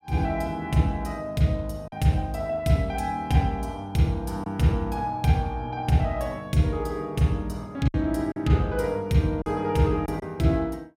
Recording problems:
lost packets; 2% of the sound replaced, filled with silence

